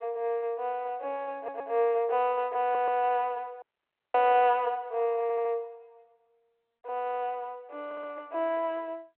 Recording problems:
phone line; 370 Hz to 3.2 kHz, G.726
stutter; 4 times, first at 1.5 s
dropout; at 3.5 s for 0.5 s

